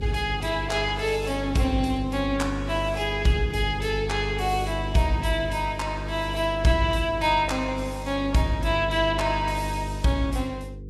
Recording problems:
lossy compression; Vorbis, log-spectral distance 3 dB, nothing above 12.3 kHz
hum; 50 Hz, harmonics up to 500 Hz, SNR 8 dB

